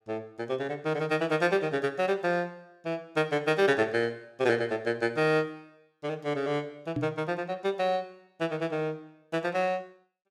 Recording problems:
microphone thump; at 7 s; peak +1 dB vs average level

